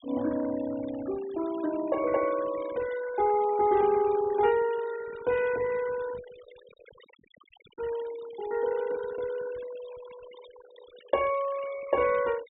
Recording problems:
treble cut off; nothing above 4 kHz
denoising artefacts; signal-to-artefact ratio 19 dB

